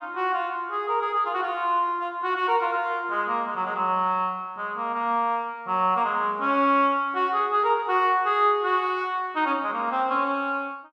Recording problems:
none

